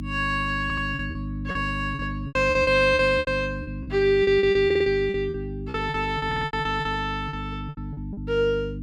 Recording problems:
hum; 50 Hz, harmonics up to 300 Hz, SNR 9 dB
packet loss; 15% of the sound replaced, filled with repeated pitch periods
stutter; at 0.5 s, at 4.5 s and at 6.5 s

